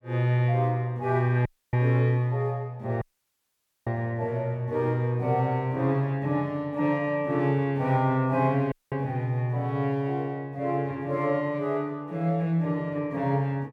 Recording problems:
dropout; at 1.5 s, at 3 s for 1 s and at 8.5 s

